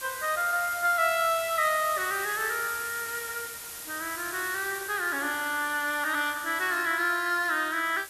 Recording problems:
hiss; slope 0 dB per octave, SNR 10 dB

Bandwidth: 13.5 kHz